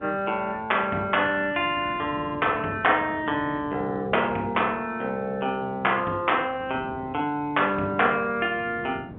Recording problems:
phone line; 190 Hz to 3.3 kHz, G.711
wind on the microphone; below 380 Hz, SNR 18 dB

